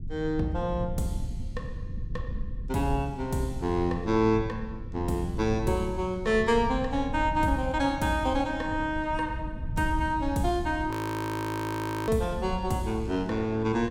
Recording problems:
low-frequency rumble; below 110 Hz, SNR 10 dB
frozen audio; at 11 s for 1 s

